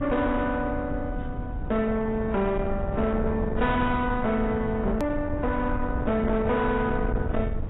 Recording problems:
lossy compression; AAC, log-spectral distance 2 dB, nothing above 13.1 kHz
distortion; soft clipping, signal-to-distortion ratio 11 dB
rumble; below 190 Hz, SNR 6 dB
hard cut with a click; at 5 s

